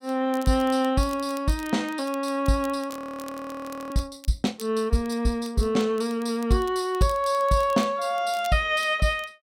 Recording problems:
crackling; vinyl, SNR 22 dB
frozen audio; at 3 s for 1 s

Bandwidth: 16 kHz